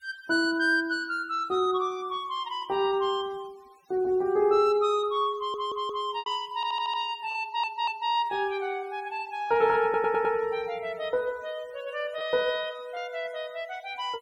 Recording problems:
noise reduction artefacts; signal-to-artefact ratio 27 dB
packet loss; 1.5% of the sound replaced, filled with repeated pitch periods
audio stuttering; 4 times, first at 5.5 s

